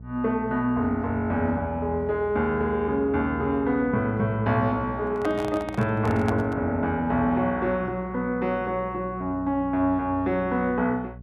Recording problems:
electrical hum; 60 Hz, harmonics up to 480 Hz, SNR 18 dB
microphone handling noise; from 5 to 6.5 s; peak -2 dB vs average level

